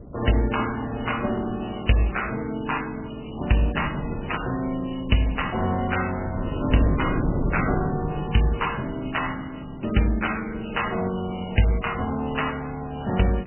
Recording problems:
lossy compression; MP3, log-spectral distance 12 dB, nothing above 3 kHz
wind noise; below 310 Hz, SNR 9 dB

